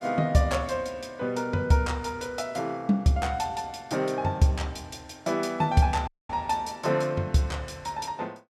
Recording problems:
audio cutting out; at 6 s

